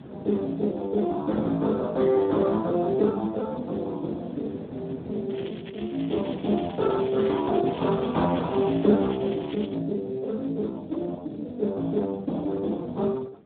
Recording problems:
telephone audio; 130 Hz to 2 kHz, Speex
wind noise; below 480 Hz, SNR 23 dB
crackling; from 5.5 to 7.5 s and from 7.5 to 10 s; loose cable, SNR 19 dB

